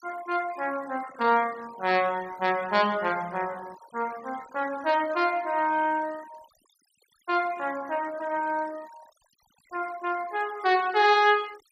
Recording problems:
noise reduction artefacts; signal-to-artefact ratio 20 dB

